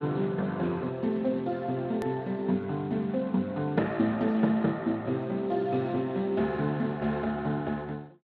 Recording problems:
codec artefacts; Speex, log-spectral distance 2 dB, nothing above 13.1 kHz
edit click; at 2 s

